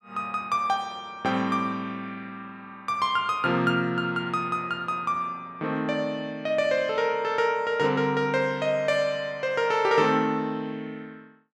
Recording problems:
none

